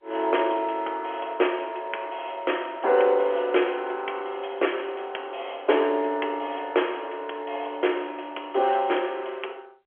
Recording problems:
phone line; 300 Hz to 3.3 kHz, G.711

